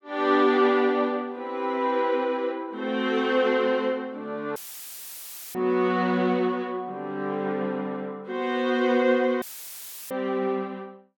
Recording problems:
dropout; at 4.5 s for 1 s and at 9.5 s for 0.5 s; filled with static

